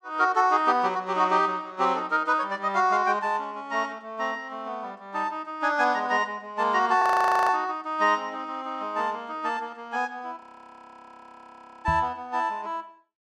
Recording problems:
audio freezing; at 7 s and at 10 s for 1.5 s
microphone bump; at 12 s; peak -1 dB vs average level

